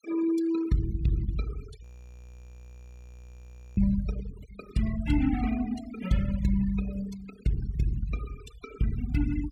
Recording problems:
denoising artefacts; signal-to-artefact ratio 17 dB
frozen audio; at 2 s for 2 s

